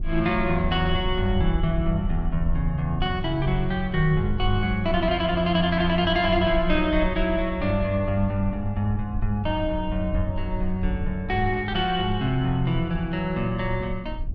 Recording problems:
low-frequency rumble; below 60 Hz, SNR 8 dB

